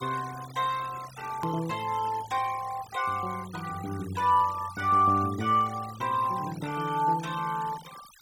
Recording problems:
noise reduction artefacts; signal-to-artefact ratio 18 dB
hard cut with a click; at 1.5 s

